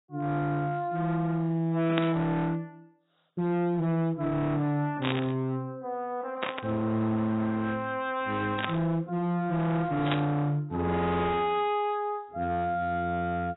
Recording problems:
lossy codec; AAC, log-spectral distance 2 dB, nothing above 3.4 kHz
distorted audio; hard clipping, signal-to-distortion ratio 8 dB
static burst; 5 times, first at 2 s; peak +2 dB vs average level

